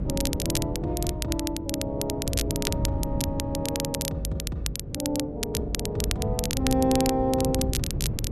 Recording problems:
electrical hum; 50 Hz, harmonics up to 550 Hz, SNR 13 dB
wind noise; below 180 Hz, SNR 4 dB
crackle; vinyl, SNR 3 dB

